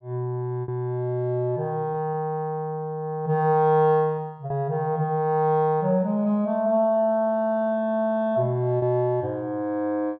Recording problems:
lost packets; 2% of the sound replaced, filled with repeated pitch periods

